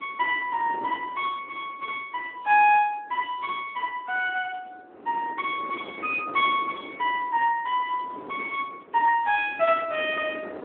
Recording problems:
telephone audio; 280 Hz to 3.3 kHz, Speex
wind on the microphone; below 720 Hz, SNR 17 dB

